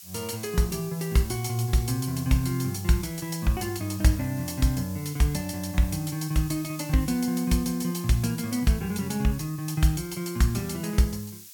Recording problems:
hiss; slope +6 dB per octave, SNR 16 dB

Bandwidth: 17.5 kHz